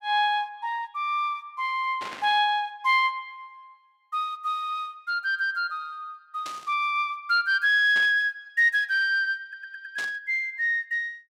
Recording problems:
static burst; 4 times, first at 2 s; peak -8 dB vs average level
audio stuttering; at 9.5 s

